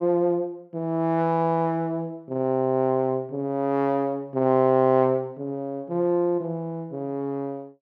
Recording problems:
none

